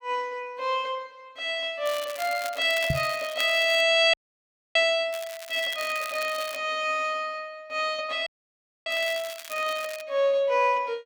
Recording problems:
crackling; from 2 to 4 s, from 5 to 6.5 s and from 9 to 10 s; loose cable, SNR 14 dB
microphone thump; at 3 s; peak +2 dB vs average level
audio freezing; at 4 s for 0.5 s and at 8.5 s for 0.5 s

